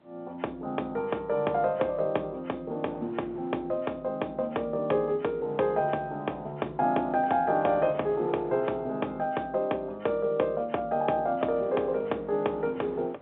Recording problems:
phone line; 280 Hz to 4 kHz, G.711
wind on the microphone; below 850 Hz, SNR 21 dB

